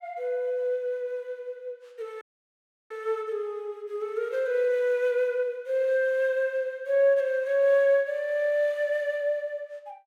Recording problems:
audio cutting out; at 2 s for 0.5 s

